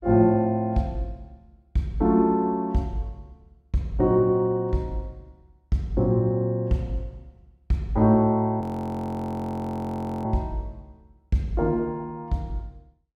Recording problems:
audio freezing; at 8.5 s for 1.5 s

